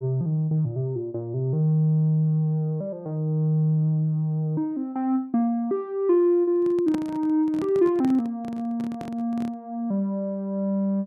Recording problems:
microphone handling noise; from 6.5 to 9.5 s; peak -3 dB vs average level

